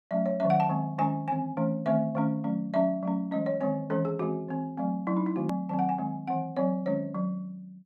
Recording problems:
hard cut with a click; at 5.5 s

